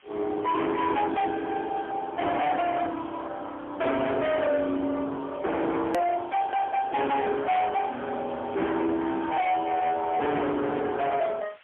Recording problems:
telephone audio; 240 Hz to 4 kHz, AMR-NB, then MP3
distortion; hard clipping, signal-to-distortion ratio 7 dB
hiss; SNR 27 dB
click at an edit; at 6 s

